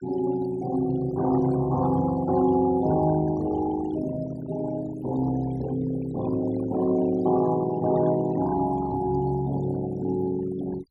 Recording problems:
denoising artefacts; signal-to-artefact ratio 16 dB

